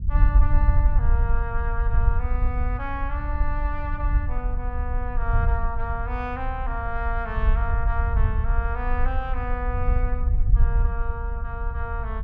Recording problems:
low-frequency rumble; below 64 Hz, SNR -7 dB

